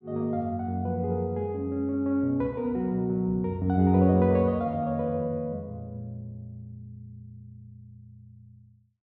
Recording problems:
none

